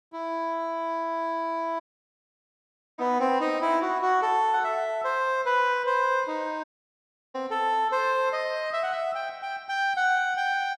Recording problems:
dropout; at 2 s for 1 s and at 6.5 s for 0.5 s

